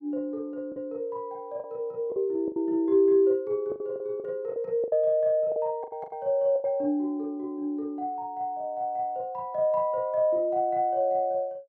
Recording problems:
lost packets; 7% of the sound replaced, filled with the last packet

